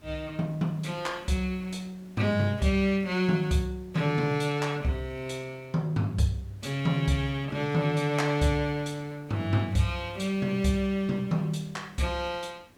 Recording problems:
background hiss; slope -5 dB per octave, SNR 27 dB

